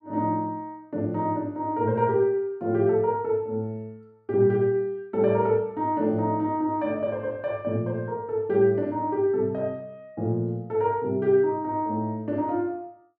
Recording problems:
none

